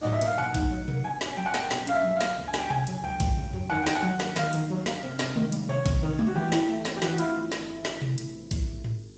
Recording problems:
lossy codec; Speex, log-spectral distance 7 dB, nothing above 7.8 kHz
hum; 50 Hz, harmonics up to 550 Hz, SNR 24 dB
background hiss; SNR 28 dB

